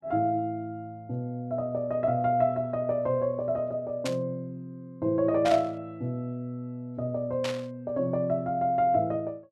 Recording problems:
static burst; at 4 s, at 5.5 s and at 7.5 s; peak -2 dB vs average level

